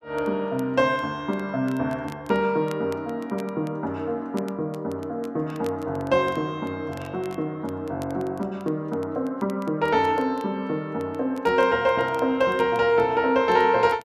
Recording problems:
crackle; vinyl, SNR 27 dB

